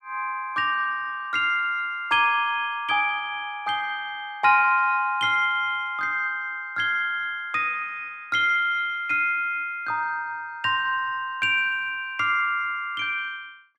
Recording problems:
none

